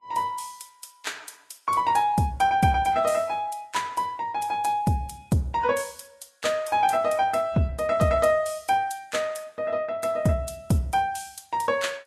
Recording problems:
lossy compression; Vorbis, log-spectral distance 3 dB, nothing above 13.8 kHz

